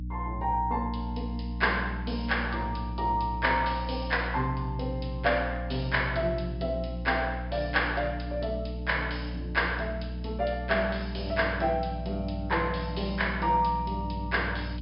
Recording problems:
treble cut off; nothing above 5.5 kHz
electrical hum; 60 Hz, harmonics up to 300 Hz, SNR 6 dB

